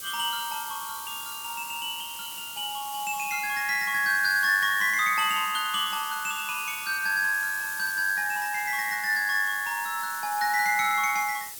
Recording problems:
hiss; SNR 10 dB

